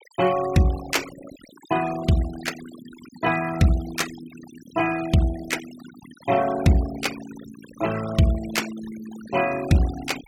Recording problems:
noise reduction artefacts; signal-to-artefact ratio 15 dB

